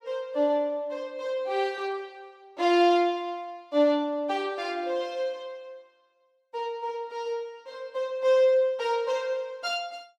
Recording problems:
none

